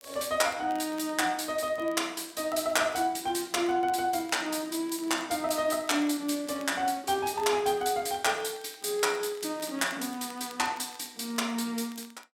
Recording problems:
crackling; vinyl, SNR 25 dB

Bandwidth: 16.5 kHz